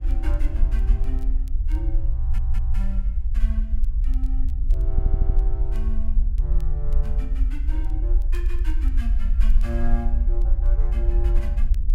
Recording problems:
rumble; below 50 Hz, SNR -12 dB
wind noise; below 64 Hz, SNR 0 dB
crackle; vinyl, SNR 24 dB
stutter; at 2 s and at 5 s

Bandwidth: 16 kHz